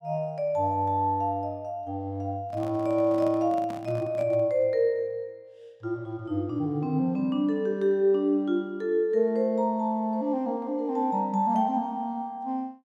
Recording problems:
microphone handling noise; from 2.5 to 4.5 s; peak -10 dB vs average level

